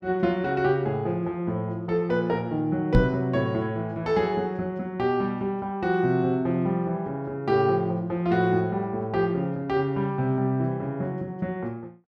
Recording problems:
microphone thump; at 3 s; peak +8 dB vs average level

